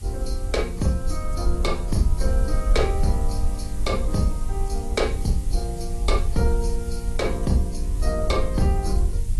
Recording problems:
lossy compression; AAC, log-spectral distance 3 dB, nothing above 11.3 kHz
background hiss; SNR 17 dB
rumble; below 60 Hz, SNR 0 dB

